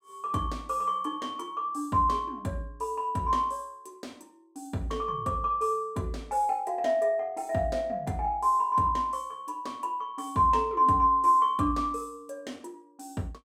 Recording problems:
none

